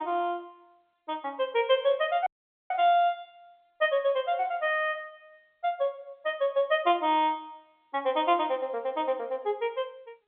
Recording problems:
telephone audio; 320 Hz to 3.7 kHz, G.711
dropout; at 2.5 s

